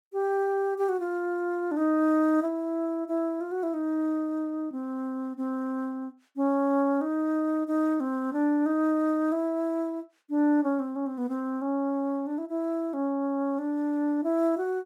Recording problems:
none

